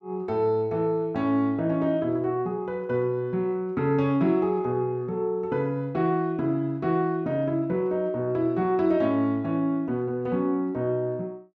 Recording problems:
none

